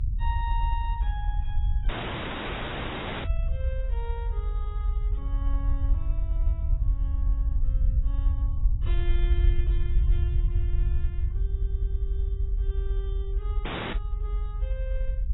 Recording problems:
codec artefacts; AAC, log-spectral distance 2 dB, nothing above 3.5 kHz
low-frequency rumble; below 64 Hz, SNR -14 dB
dropout; at 2 s for 1.5 s and at 14 s
audio stuttering; at 11 s

